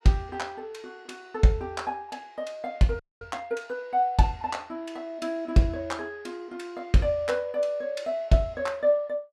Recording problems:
frozen audio; at 3 s

